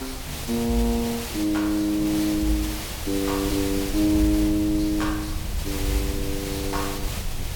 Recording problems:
background hiss; slope -2 dB per octave, SNR 8 dB
rumble; below 92 Hz, SNR 10 dB
wind on the microphone; below 360 Hz, SNR 21 dB

